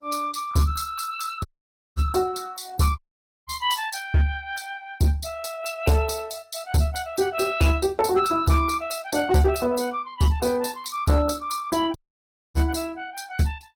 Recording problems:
codec artefacts; Opus, log-spectral distance 5 dB, nothing above 17 kHz
distorted audio; hard clipping, signal-to-distortion ratio 12 dB
dropout; at 1.5 s for 0.5 s, at 3 s and at 12 s for 0.5 s

